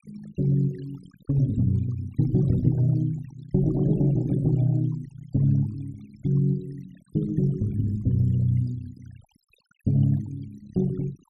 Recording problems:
noise reduction artefacts; signal-to-artefact ratio 23 dB

